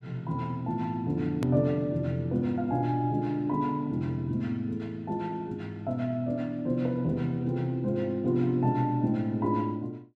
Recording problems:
hard cut with a click; at 1.5 s

